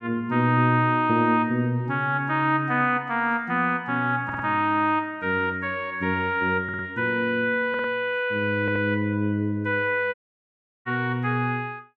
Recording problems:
audio stuttering; 4 times, first at 4 s
dropout; at 10 s for 0.5 s

